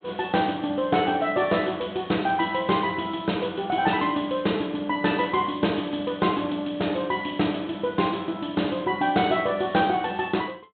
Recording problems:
treble cut off; nothing above 4 kHz

